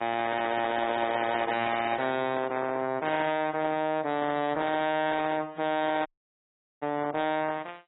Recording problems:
codec artefacts; AAC, log-spectral distance 5 dB, nothing above 3.8 kHz
distortion; hard clipping, signal-to-distortion ratio 7 dB
audio cutting out; at 6 s for 1 s

